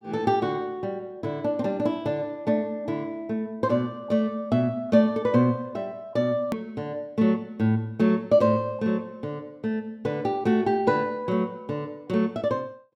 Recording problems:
hard cut with a click; at 6.5 s

